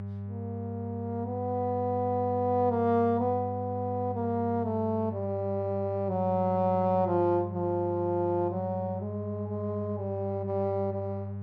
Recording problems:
electrical hum; 50 Hz, harmonics up to 800 Hz, SNR 8 dB

